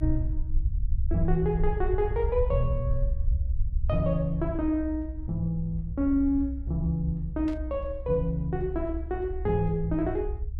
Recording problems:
low-frequency rumble; below 66 Hz, SNR 4 dB
burst of static; at 7.5 s; peak -15 dB vs average level

